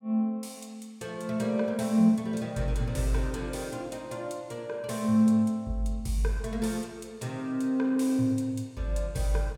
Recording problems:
none

